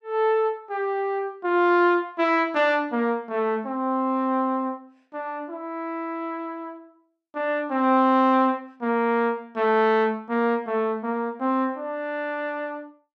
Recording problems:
none

